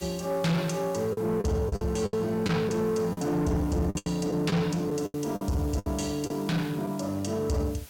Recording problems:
distortion; soft clipping, signal-to-distortion ratio 10 dB
hiss; slope 0 dB per octave, SNR 21 dB
packet loss; 9% of the sound replaced, filled with the last packet

